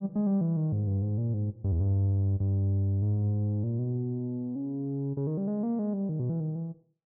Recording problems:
none

